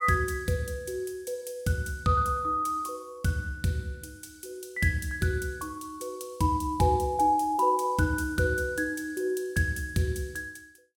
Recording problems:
none

